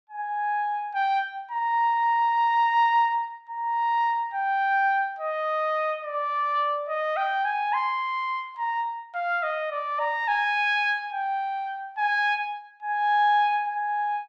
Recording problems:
none

